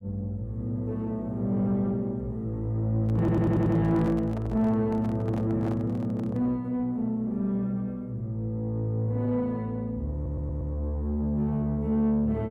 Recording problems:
distortion; soft clipping, signal-to-distortion ratio 11 dB
handling noise; from 3 to 6.5 s; peak -5 dB vs average level
stutter; at 3 s and at 10 s

